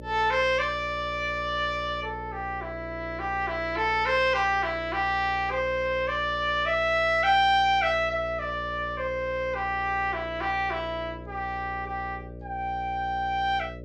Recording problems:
electrical hum; 60 Hz, harmonics up to 600 Hz, SNR 15 dB

